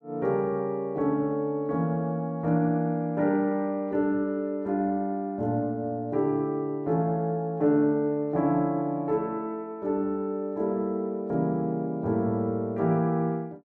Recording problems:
none

